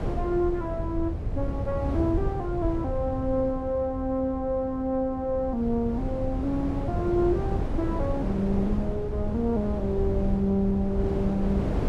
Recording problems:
rumble; below 100 Hz, SNR 9 dB
wind on the microphone; below 280 Hz, SNR 5 dB

